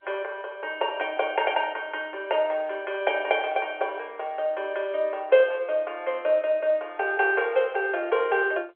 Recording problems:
phone line; 340 Hz to 3.5 kHz, G.711

